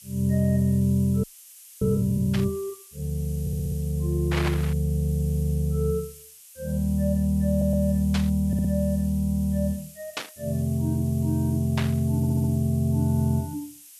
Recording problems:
hiss; slope +6 dB per octave, SNR 20 dB
audio freezing; at 1 s for 0.5 s
burst of static; 5 times, first at 2.5 s; peak -1 dB vs average level
stutter; 4 times, first at 3.5 s

